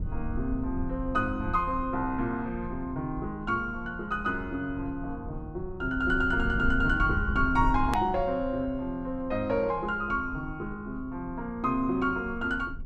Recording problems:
low-frequency rumble; below 82 Hz, SNR 9 dB
click at an edit; at 8 s

